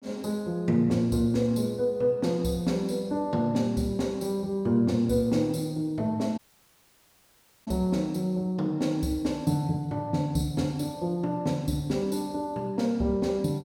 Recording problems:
dropout; at 6.5 s for 1.5 s

